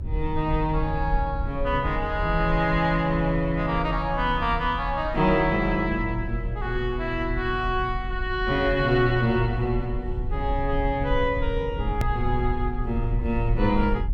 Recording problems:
low-frequency rumble; below 66 Hz, SNR 7 dB
edit click; at 12 s

